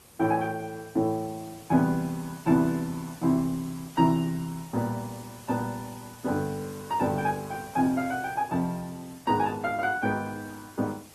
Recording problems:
codec artefacts; Opus, log-spectral distance 5 dB
hiss; slope -3 dB per octave, SNR 20 dB

